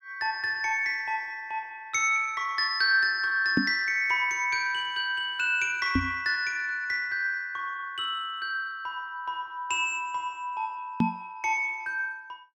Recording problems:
knock on the microphone; at 3.5 s, at 6 s and at 11 s; peak +6 dB vs average level

